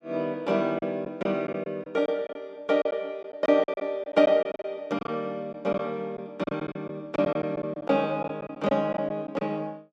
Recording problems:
lost packets; 10% of the sound replaced, filled with silence

